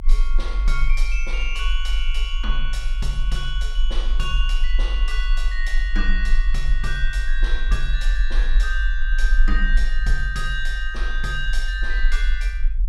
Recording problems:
low-frequency rumble; below 42 Hz, strongest tone 22 Hz, SNR -5 dB

